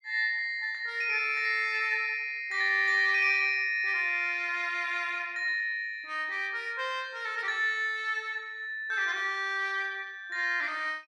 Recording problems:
none

